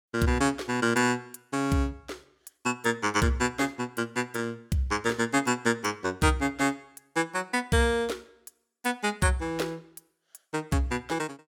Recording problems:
none

